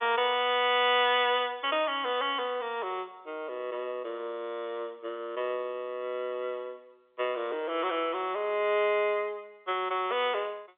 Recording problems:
telephone audio; 280 Hz to 3.5 kHz, G.711

